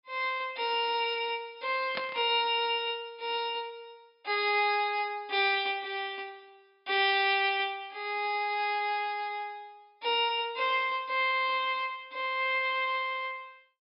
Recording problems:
treble cut off; nothing above 5.5 kHz
static burst; at 2 s; peak -2 dB vs average level

